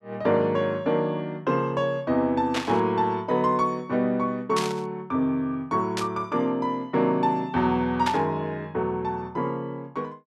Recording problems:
burst of static; 4 times, first at 2.5 s; peak +1 dB vs average level

